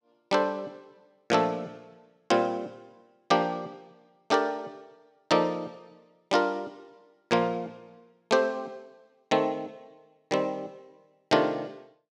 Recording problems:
none

